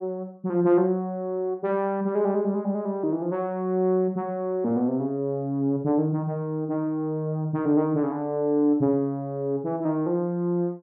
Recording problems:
none

